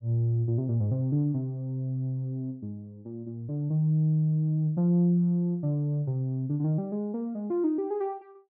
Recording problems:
treble cut off; nothing above 5.4 kHz

